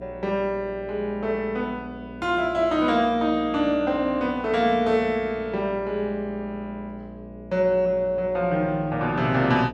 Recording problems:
hum; 60 Hz, harmonics up to 660 Hz, SNR 17 dB

